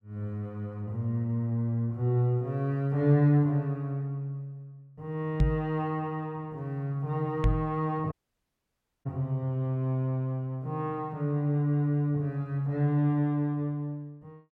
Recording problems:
microphone thump; at 5.5 s and at 7.5 s; peak +7 dB vs average level
audio cutting out; at 8 s for 1 s

